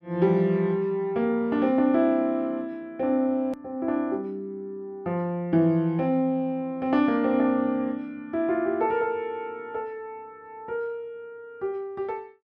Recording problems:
hard cut with a click; at 3.5 s

